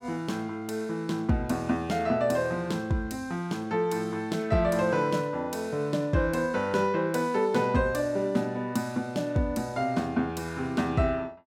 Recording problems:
none

